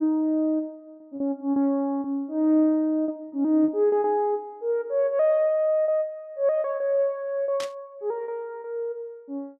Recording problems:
packet loss; 6% of the sound replaced, filled with repeated pitch periods
burst of static; at 7.5 s; peak -7 dB vs average level

